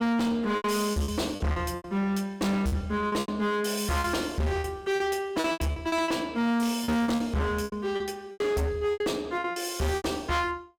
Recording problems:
distorted audio; hard clipping, signal-to-distortion ratio 7 dB
lost packets; 13% of the sound replaced, filled with repeated pitch periods

